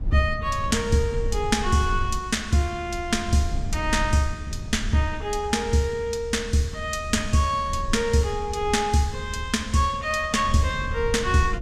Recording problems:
low-frequency rumble; below 84 Hz, SNR 10 dB

